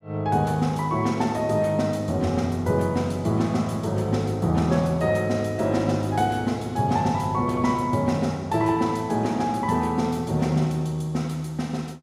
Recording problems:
none

